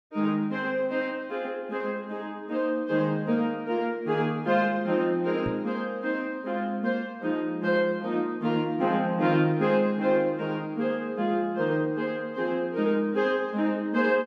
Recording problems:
microphone thump; at 5.5 s; peak -4 dB vs average level

